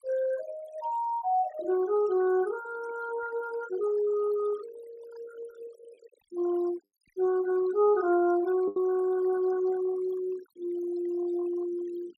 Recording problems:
denoising artefacts; signal-to-artefact ratio 20 dB
lost packets; 0.9% of the sound replaced, filled with the last packet

